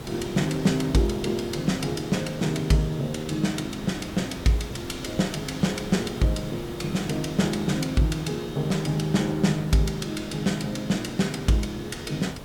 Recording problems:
hiss; slope -5 dB per octave, SNR 12 dB

